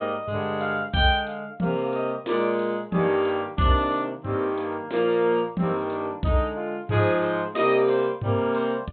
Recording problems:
low-pass filter; nothing above 4 kHz

